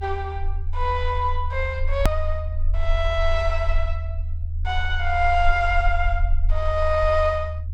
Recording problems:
low-frequency rumble; below 78 Hz, strongest tone 22 Hz, SNR 3 dB
click at an edit; at 2 s

